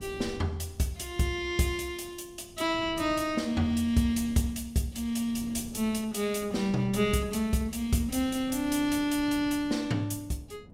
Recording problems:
wind on the microphone; below 280 Hz, SNR 19 dB

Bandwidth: 16 kHz